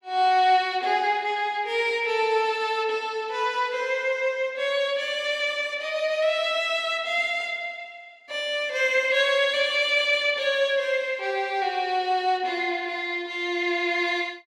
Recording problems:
none

